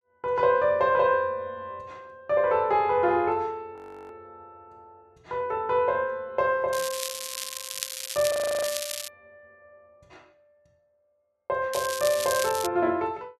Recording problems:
frozen audio; at 4 s and at 8.5 s
crackling; from 6.5 to 9 s and at 12 s; loose cable, SNR 7 dB

